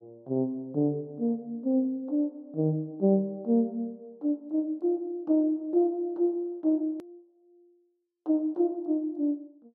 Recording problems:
click at an edit; at 7 s

